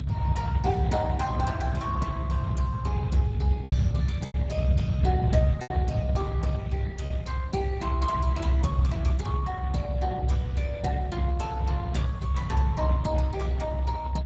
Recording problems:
lossy compression; Speex, log-spectral distance 3 dB, nothing above 7.6 kHz
low-frequency rumble; below 130 Hz, strongest tone 64 Hz, SNR -4 dB
lost packets; 2% of the sound replaced, filled with repeated pitch periods

